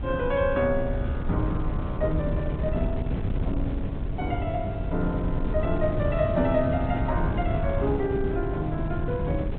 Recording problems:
treble missing; nothing above 4 kHz
wind noise; below 160 Hz, SNR 1 dB

